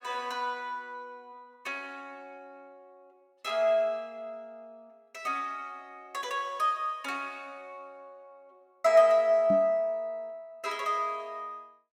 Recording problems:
microphone bump; at 9.5 s; peak -1 dB vs average level

